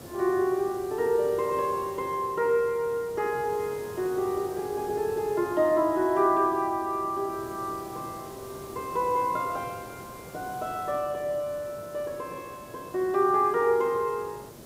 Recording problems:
background hiss; SNR 17 dB

